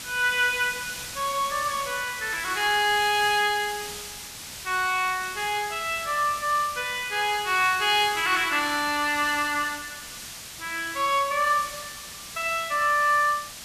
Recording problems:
hiss; slope +1 dB per octave, SNR 11 dB

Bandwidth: 14.5 kHz